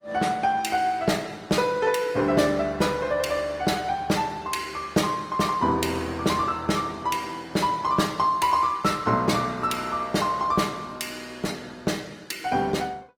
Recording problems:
lossy codec; Opus, log-spectral distance 4 dB, nothing above 19 kHz

